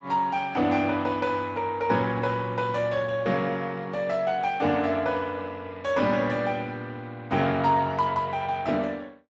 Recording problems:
codec artefacts; Speex, log-spectral distance 3 dB, nothing above 7.3 kHz

